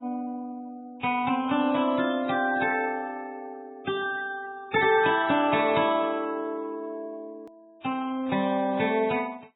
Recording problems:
lossy compression; AAC, then Vorbis, log-spectral distance 3 dB, nothing above 3.8 kHz
hard cut with a click; at 7.5 s

